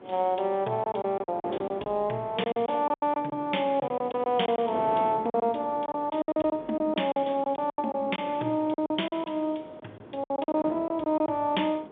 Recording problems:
telephone audio; 240 Hz to 3.6 kHz, G.711
wind on the microphone; below 660 Hz, SNR 16 dB
packet loss; 13% of the sound replaced, filled with silence

